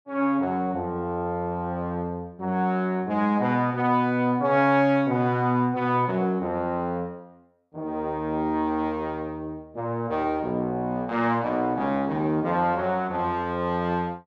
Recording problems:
none

